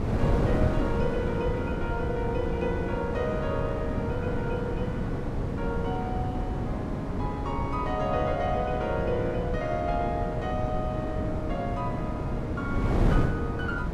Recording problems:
wind on the microphone; below 310 Hz, SNR -1 dB

